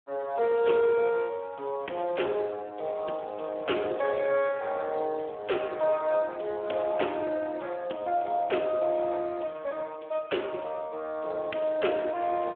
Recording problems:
telephone audio; 260 Hz to 3.4 kHz, Speex

